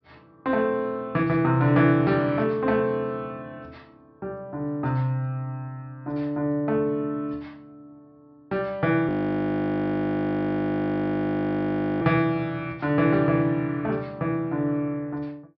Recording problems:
treble missing; nothing above 5.5 kHz
frozen audio; at 9 s for 3 s

